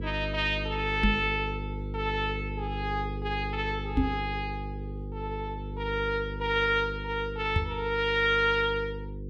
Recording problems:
hum; 50 Hz, harmonics up to 500 Hz, SNR 7 dB
knock on the microphone; at 1 s, at 4 s and at 7.5 s; peak +7 dB vs average level

